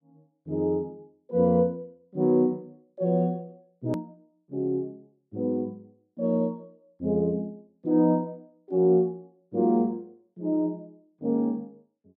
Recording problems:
click at an edit; at 4 s

